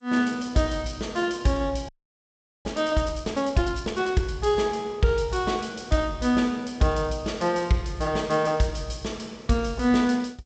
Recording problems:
lossy compression; G.722, log-spectral distance 5 dB, nothing above 7.8 kHz
audio freezing; at 2 s for 1 s

